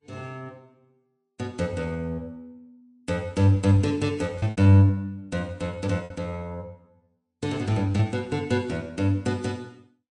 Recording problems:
codec artefacts; Vorbis, then MP3, log-spectral distance 2 dB, nothing above 8.7 kHz
packet loss; 3% of the sound replaced, filled with repeated pitch periods

